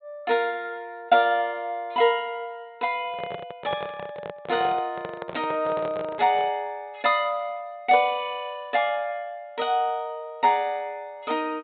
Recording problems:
treble cut off; nothing above 4 kHz
microphone handling noise; from 3 to 6.5 s; peak -3 dB vs average level

